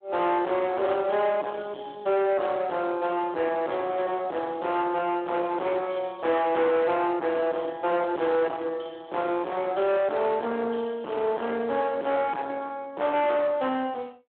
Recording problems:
phone line; 280 Hz to 3.3 kHz, Speex
distortion; soft clipping, signal-to-distortion ratio 8 dB

